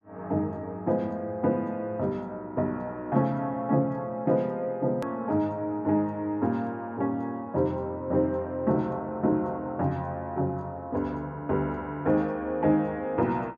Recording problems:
click at an edit; at 5 s

